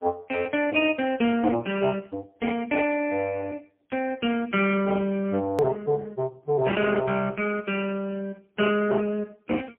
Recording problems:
phone line; 190 Hz to 3 kHz, AMR-NB, then MP3
edit click; at 5.5 s

